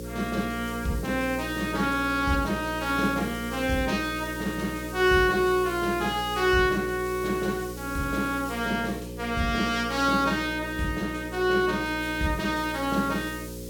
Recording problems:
hum; 60 Hz, harmonics up to 540 Hz, SNR 11 dB
hiss; SNR 18 dB

